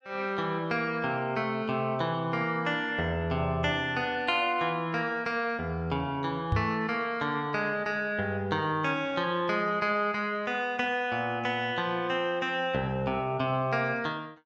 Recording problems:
microphone thump; at 6.5 s; peak +4 dB vs average level

